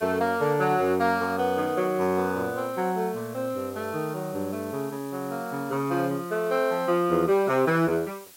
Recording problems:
background hiss; slope +1 dB per octave, SNR 21 dB

